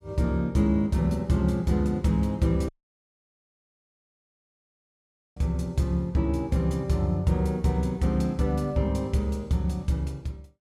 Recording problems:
dropout; at 2.5 s for 2.5 s

